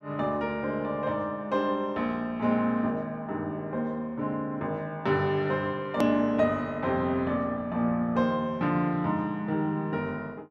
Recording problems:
click at an edit; at 6 s

